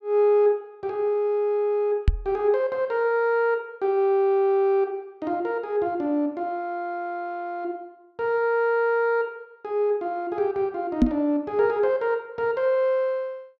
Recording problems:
microphone thump; at 2 s and at 11 s; peak +9 dB vs average level

